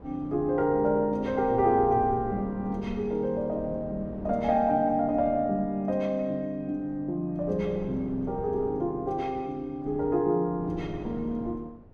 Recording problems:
wind noise; below 390 Hz, SNR 16 dB

